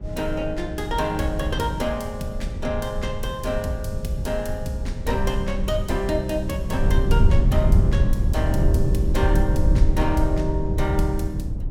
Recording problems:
rumble; below 96 Hz, SNR -2 dB

